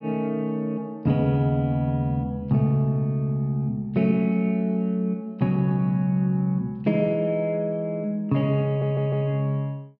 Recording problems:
audio stuttering; at 8.5 s

